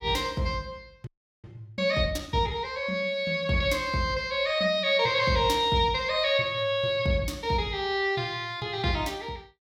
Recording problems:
frozen audio; at 1 s

